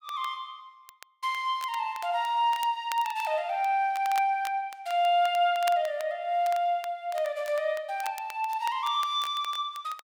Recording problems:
crackle; vinyl, SNR 19 dB

